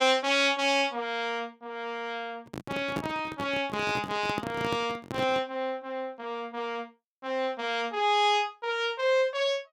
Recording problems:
handling noise; from 2.5 to 5.5 s; peak 0 dB vs average level

